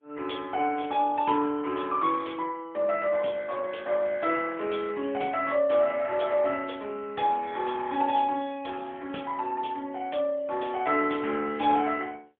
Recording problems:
telephone audio; 240 Hz to 3.5 kHz, AMR-NB, then MP3

